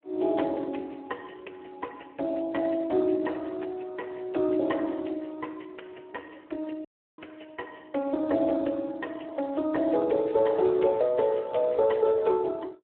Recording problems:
telephone audio; 240 Hz to 3 kHz, Speex
dropout; at 7 s

